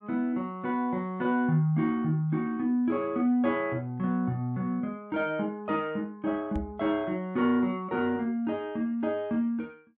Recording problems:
knock on the microphone; at 6.5 s; peak -2 dB vs average level

